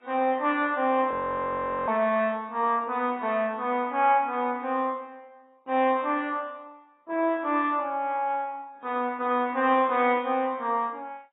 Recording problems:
lossy codec; MP2, then AAC, log-spectral distance 3 dB, nothing above 3.2 kHz
frozen audio; at 1 s for 1 s

